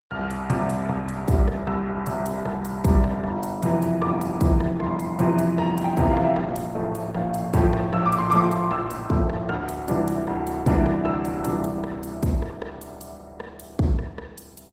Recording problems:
codec artefacts; Opus, log-spectral distance 3 dB, nothing above 16 kHz

